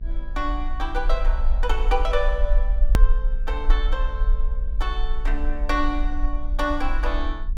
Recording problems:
electrical hum; 60 Hz, harmonics up to 660 Hz, SNR 17 dB
rumble; below 42 Hz, SNR -3 dB
hard cut with a click; at 3 s

